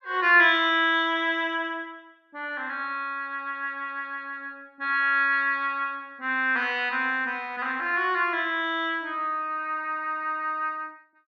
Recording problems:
none

